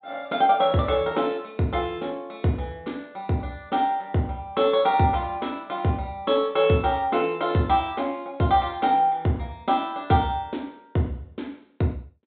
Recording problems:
treble cut off; nothing above 4 kHz

